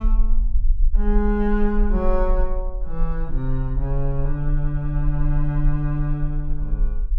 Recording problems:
low-frequency rumble; below 38 Hz, strongest tone 24 Hz, SNR 1 dB

